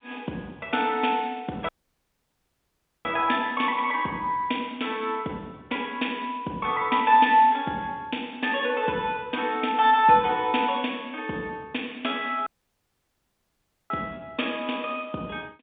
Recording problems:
telephone audio; 190 Hz to 3.7 kHz, G.711
audio cutting out; at 1.5 s for 1.5 s and at 12 s for 1.5 s

